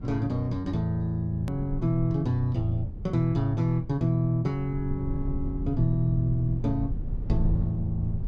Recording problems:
rumble; below 100 Hz, SNR 8 dB
hard cut with a click; at 1.5 s

